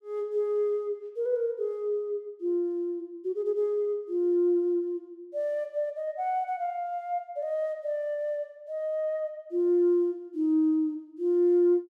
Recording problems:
none

